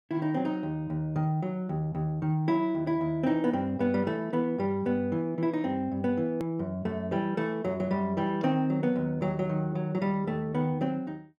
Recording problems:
edit click; at 6.5 s

